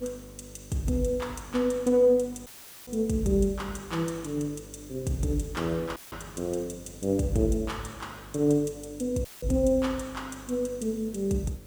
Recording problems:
mains hum; 50 Hz, harmonics up to 600 Hz, SNR 20 dB
hiss; slope 0 dB per octave, SNR 24 dB
dropout; at 2.5 s, at 6 s and at 9.5 s

